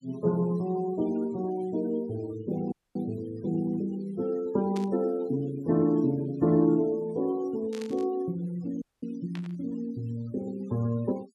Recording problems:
noise reduction artefacts; signal-to-artefact ratio 22 dB
audio cutting out; at 2.5 s and at 9 s
static burst; at 5 s, at 7.5 s and at 9.5 s; peak -10 dB vs average level

